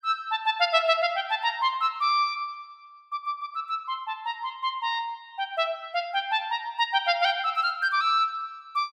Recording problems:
none

